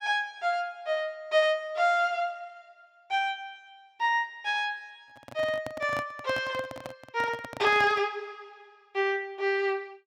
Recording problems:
handling noise; from 5 to 8 s; peak -6 dB vs average level

